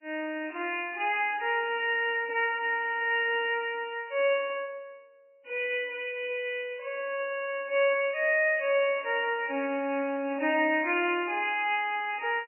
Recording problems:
lossy codec; MP3, log-spectral distance 5 dB, nothing above 2.5 kHz

